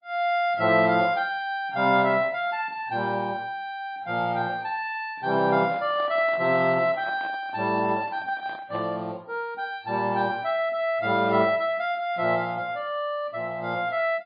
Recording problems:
lossy codec; MP3, log-spectral distance 2 dB
handling noise; from 5.5 to 9 s; peak -9 dB vs average level

